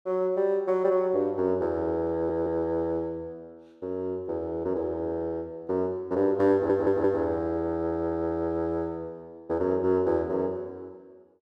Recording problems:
stutter; at 2 s, at 6.5 s and at 7.5 s

